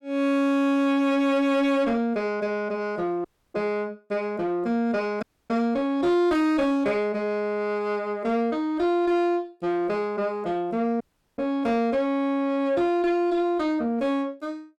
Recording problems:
distortion; soft clipping, signal-to-distortion ratio 10 dB
audio cutting out; at 3.5 s, at 5 s and at 11 s

